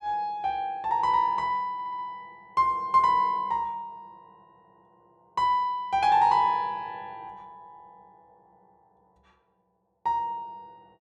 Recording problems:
stutter; at 1.5 s

